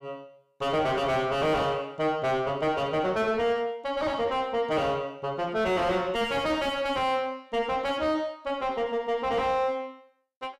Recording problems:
distortion; soft clipping, signal-to-distortion ratio 5 dB

